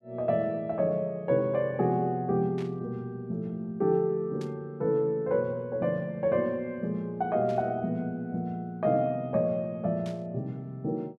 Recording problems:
burst of static; 4 times, first at 2.5 s; peak -14 dB vs average level

